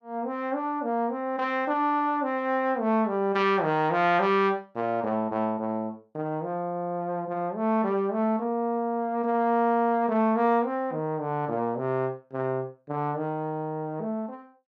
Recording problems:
none

